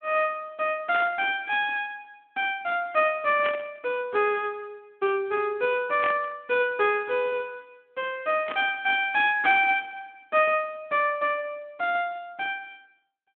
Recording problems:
phone line; 190 Hz to 3.4 kHz, Speex
static burst; 4 times, first at 1 s; peak -4 dB vs average level

